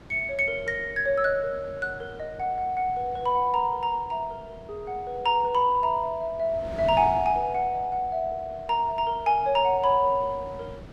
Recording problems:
wind noise; below 520 Hz, SNR 19 dB

